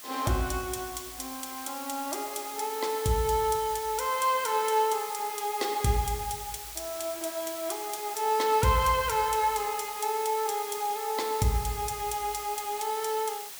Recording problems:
hiss; slope +1 dB per octave, SNR 9 dB

